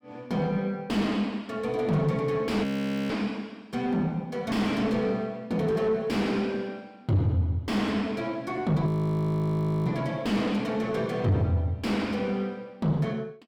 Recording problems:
distorted audio; soft clipping, signal-to-distortion ratio 7 dB
audio freezing; at 2.5 s and at 9 s for 1 s

